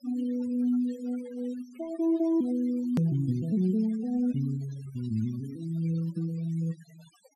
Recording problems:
noise reduction artefacts; signal-to-artefact ratio 22 dB
click at an edit; at 3 s

